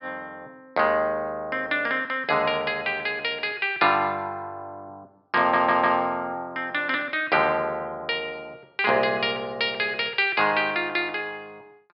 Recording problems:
low-pass filter; nothing above 5.5 kHz
audio stuttering; at 5.5 s

